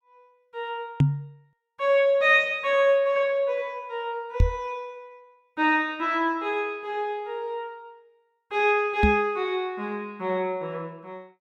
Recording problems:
microphone thump; at 1 s, at 4.5 s and at 9 s; peak +8 dB vs average level

